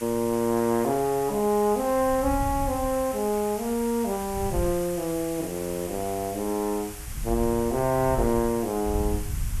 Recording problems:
hiss; SNR 13 dB
wind on the microphone; below 100 Hz, SNR 9 dB

